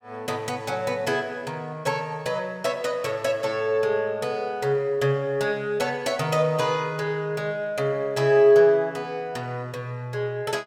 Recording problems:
none

